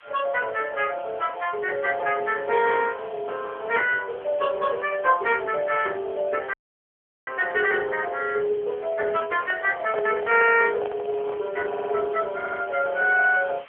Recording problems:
phone line; 370 Hz to 3.3 kHz, AMR-NB
background hiss; SNR 25 dB
dropout; at 6.5 s for 0.5 s
microphone handling noise; from 9.5 to 12 s; peak -6 dB vs average level
audio stuttering; at 12 s

